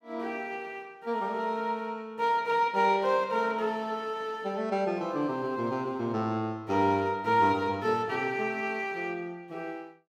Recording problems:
none

